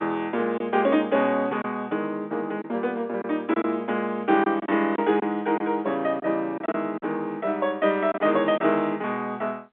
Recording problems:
telephone audio; 170 Hz to 3.8 kHz, G.711
lost packets; 4% of the sound replaced, filled with silence

